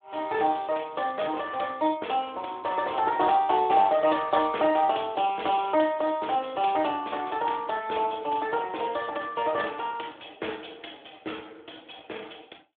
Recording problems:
telephone audio; 260 Hz to 3.5 kHz, Speex

